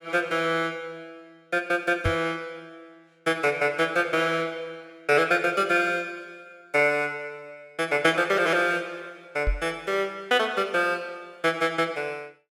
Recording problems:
knock on the microphone; at 2 s and at 9.5 s; peak +1 dB vs average level

